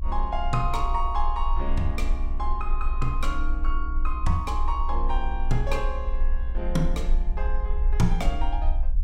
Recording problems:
low-frequency rumble; below 42 Hz, strongest tone 22 Hz, SNR -1 dB

